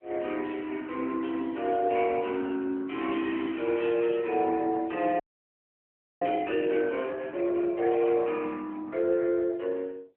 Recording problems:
phone line; 240 Hz to 3.1 kHz, AMR-NB
frozen audio; at 5 s for 1 s

